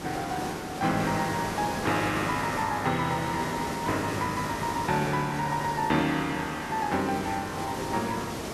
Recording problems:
hiss; slope -5 dB per octave, SNR 6 dB

